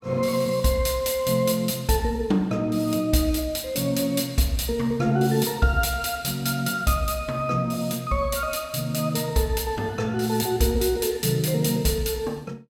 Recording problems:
none

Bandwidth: 17 kHz